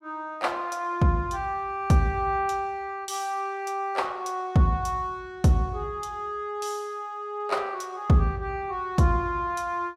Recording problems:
none

